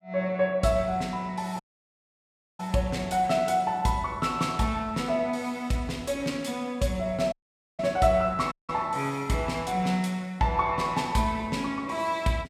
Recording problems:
dropout; at 1.5 s for 1 s, at 7.5 s and at 8.5 s

